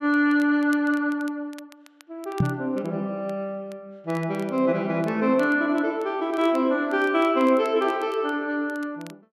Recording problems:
crackling; vinyl, SNR 27 dB
microphone thump; at 2.5 s; peak +5 dB vs average level

